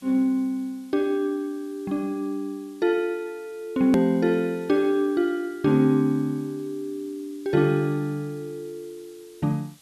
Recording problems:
hiss; slope +1 dB per octave, SNR 29 dB
click at an edit; at 4 s

